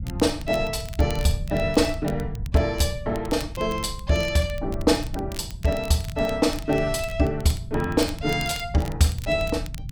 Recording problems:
rumble; below 110 Hz, SNR 10 dB
crackle; vinyl, SNR 19 dB

